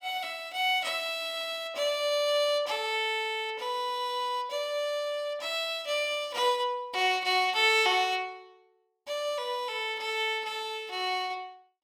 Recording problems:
none

